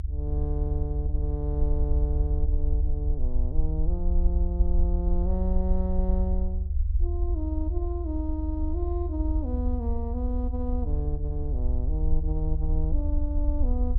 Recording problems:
low-frequency rumble; below 74 Hz, SNR -6 dB

